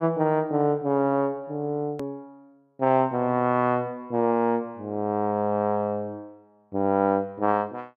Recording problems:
click at an edit; at 2 s

